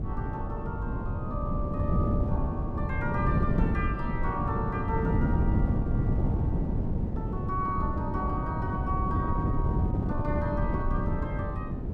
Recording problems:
wind on the microphone; below 210 Hz, SNR -6 dB

